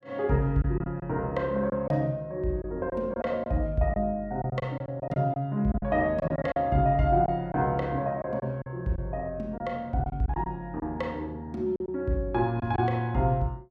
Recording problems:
packet loss; 7% of the sound replaced, filled with silence

